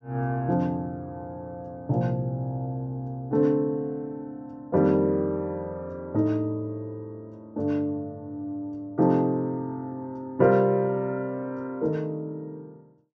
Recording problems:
treble missing; nothing above 8 kHz

